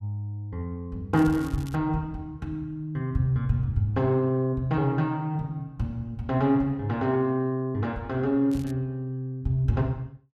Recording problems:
crackle; at 1 s and at 8.5 s; loose cable, SNR 23 dB

